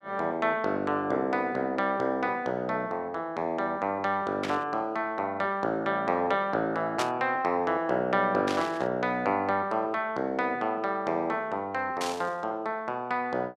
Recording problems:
burst of static; 4 times, first at 4.5 s; peak -1 dB vs average level

